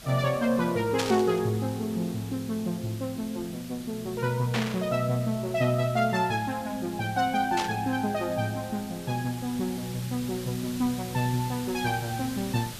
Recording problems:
hiss; SNR 14 dB
burst of static; at 1 s, at 4.5 s and at 7.5 s; peak +3 dB vs average level

